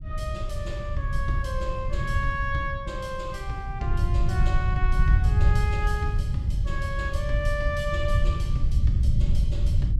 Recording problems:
low-frequency rumble; below 88 Hz, SNR -5 dB

